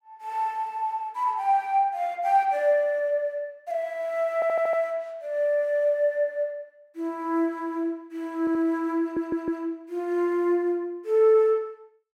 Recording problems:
audio stuttering; at 4.5 s, at 8.5 s and at 9 s

